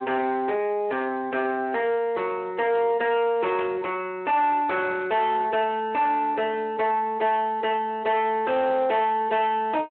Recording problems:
telephone audio; 320 Hz to 3.3 kHz, Speex
distortion; soft clipping, signal-to-distortion ratio 10 dB
burst of static; at 3.5 s; peak -10 dB vs average level

